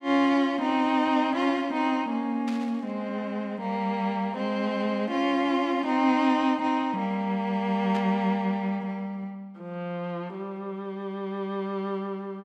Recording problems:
burst of static; at 2.5 s and at 8 s; peak -9 dB vs average level

